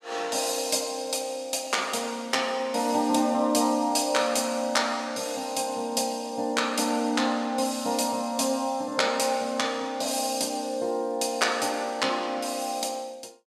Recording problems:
none

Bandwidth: 15.5 kHz